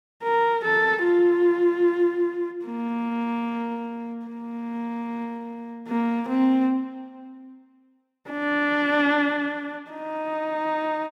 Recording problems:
none

